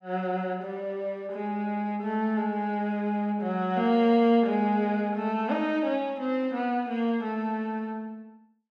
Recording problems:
none

